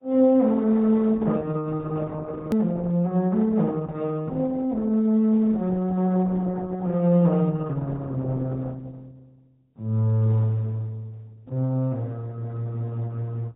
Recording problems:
treble cut off; nothing above 4 kHz
lossy codec; Opus, then Opus, log-spectral distance 2 dB
edit click; at 2.5 s

